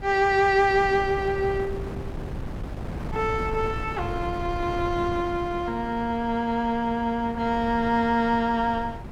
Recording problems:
wind noise; below 310 Hz, SNR 11 dB

